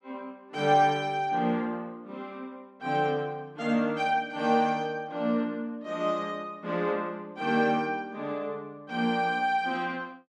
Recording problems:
none

